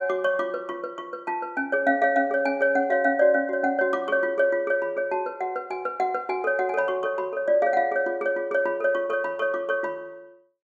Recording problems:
none

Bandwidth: 13.5 kHz